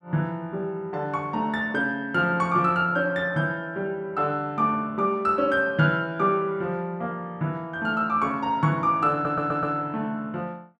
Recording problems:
stutter; at 9 s

